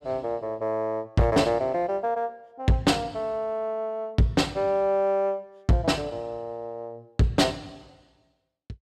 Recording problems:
distortion; hard clipping, signal-to-distortion ratio 10 dB

